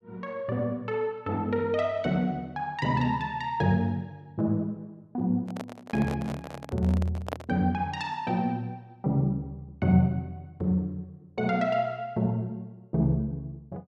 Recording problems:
handling noise; from 5.5 to 7.5 s; peak -1 dB vs average level

